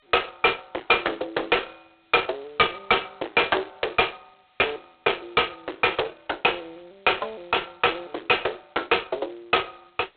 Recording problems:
phone line; 300 Hz to 3.7 kHz, G.726
distorted audio; soft clipping, signal-to-distortion ratio 7 dB

